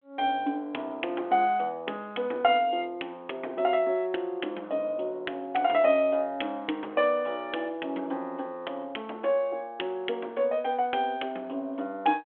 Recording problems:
telephone audio; 240 Hz to 3.4 kHz, G.726

